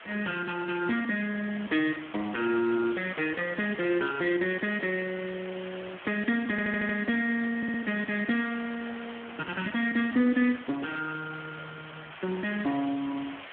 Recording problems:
telephone audio; 280 Hz to 3.3 kHz, Speex
hiss; SNR 14 dB
audio stuttering; at 6.5 s and at 7.5 s

